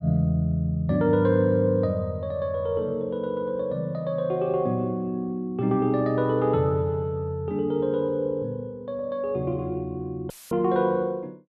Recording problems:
dropout; at 10 s; filled with static

